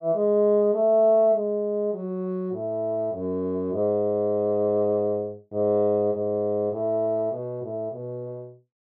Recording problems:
none

